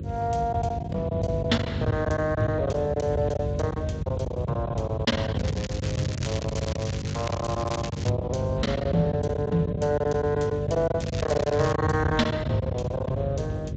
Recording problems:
lossy codec; Speex, log-spectral distance 3 dB, nothing above 7.6 kHz
electrical hum; 50 Hz, harmonics up to 550 Hz, SNR 5 dB
rumble; below 130 Hz, SNR 6 dB
lost packets; 12% of the sound replaced, filled with silence
crackling; from 5.5 to 8 s and at 11 s; loose cable, SNR 11 dB

